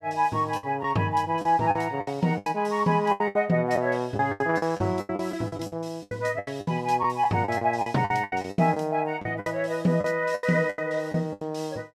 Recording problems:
packet loss; 15% of the sound replaced, filled with the last packet

